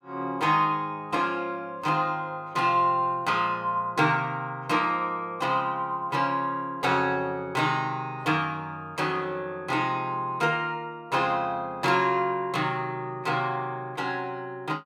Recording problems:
none

